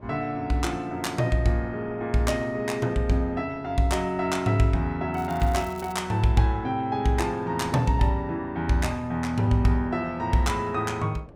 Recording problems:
wind on the microphone; below 590 Hz, SNR 24 dB
crackle; at 5 s; loose cable, SNR 24 dB

